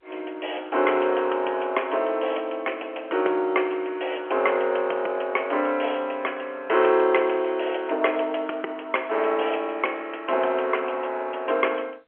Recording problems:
phone line; 300 Hz to 3.2 kHz, G.711

